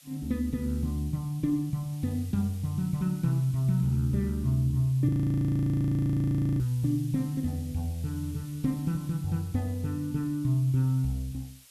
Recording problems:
hiss; slope +3 dB per octave, SNR 23 dB
audio freezing; at 5 s for 1.5 s

